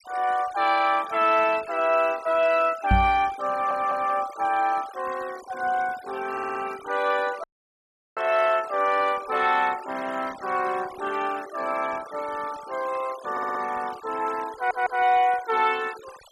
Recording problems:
denoising artefacts; signal-to-artefact ratio 18 dB
microphone thump; at 3 s; peak +6 dB vs average level
stutter; 4 times, first at 3.5 s
dropout; at 7.5 s for 0.5 s

